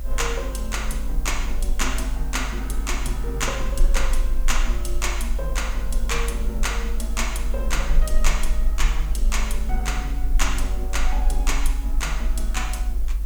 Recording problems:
hiss; slope -1 dB per octave, SNR 18 dB
low-frequency rumble; below 48 Hz, strongest tone 20 Hz, SNR -2 dB
wind on the microphone; below 330 Hz, SNR 18 dB

